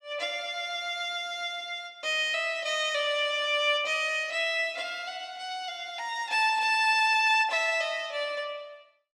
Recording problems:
none

